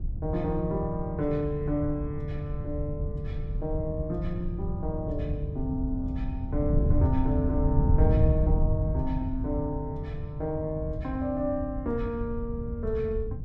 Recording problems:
wind on the microphone; below 100 Hz, SNR 0 dB

